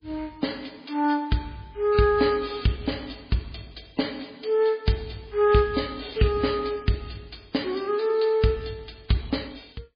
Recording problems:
lossy compression; MP3, log-spectral distance 8 dB, nothing above 4.5 kHz

